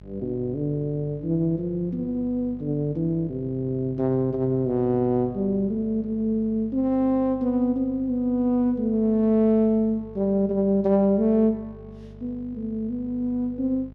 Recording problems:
electrical hum; 50 Hz, harmonics up to 850 Hz, SNR 21 dB

